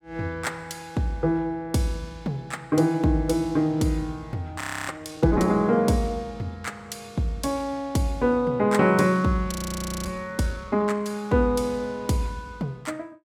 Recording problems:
audio freezing; at 4.5 s and at 9.5 s for 0.5 s

